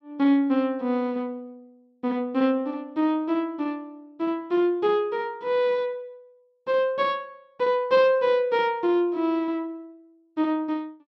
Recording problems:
none

